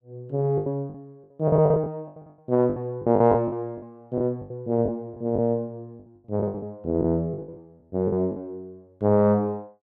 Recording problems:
lost packets; 13% of the sound replaced, filled with the last packet

